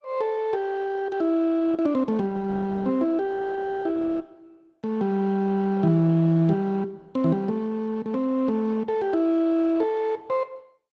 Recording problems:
lossy compression; Opus, log-spectral distance 2 dB

